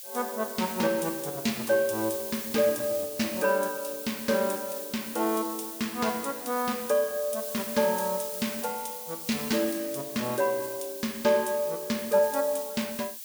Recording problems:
hiss; SNR 8 dB

